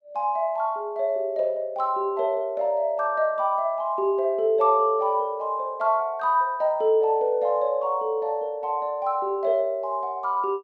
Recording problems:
none

